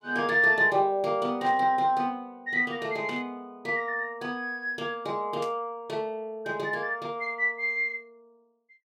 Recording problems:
static burst; at 1.5 s, at 3 s and at 5.5 s; peak -11 dB vs average level

